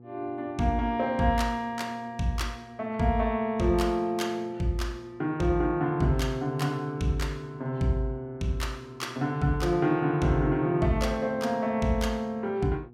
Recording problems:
hum; 60 Hz, harmonics up to 840 Hz, SNR 22 dB

